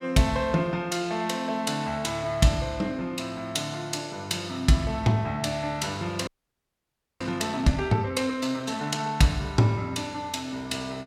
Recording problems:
frozen audio; at 6.5 s for 1 s

